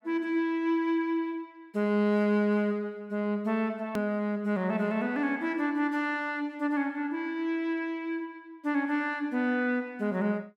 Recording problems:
click at an edit; at 4 s

